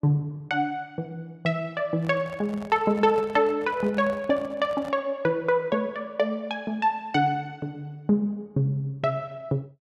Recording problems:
microphone handling noise; from 2 to 5 s; peak -9 dB vs average level

